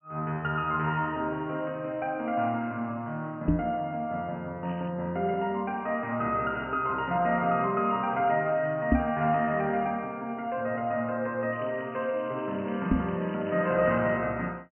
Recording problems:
low-pass filter; nothing above 3 kHz
microphone thump; at 3.5 s, at 9 s and at 13 s; peak +8 dB vs average level
crackle; at 4.5 s and from 12 to 14 s; loose cable, SNR 25 dB

